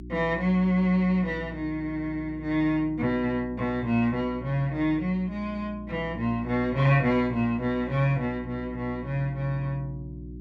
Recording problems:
hum; 60 Hz, harmonics up to 360 Hz, SNR 15 dB

